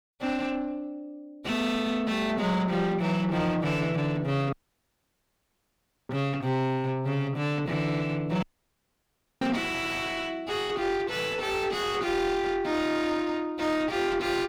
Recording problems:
distortion; soft clipping, signal-to-distortion ratio 6 dB
dropout; at 4.5 s for 1.5 s and at 8.5 s for 1 s

